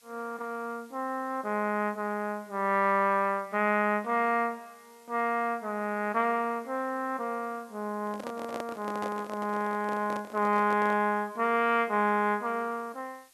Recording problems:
hiss; slope +2 dB per octave, SNR 29 dB
microphone handling noise; from 8 to 11 s; peak -4 dB vs average level

